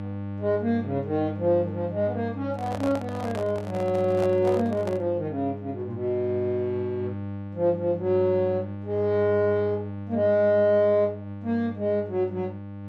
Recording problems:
electrical hum; 50 Hz, harmonics up to 1.2 kHz, SNR 10 dB
microphone handling noise; from 2.5 to 5 s; peak -5 dB vs average level

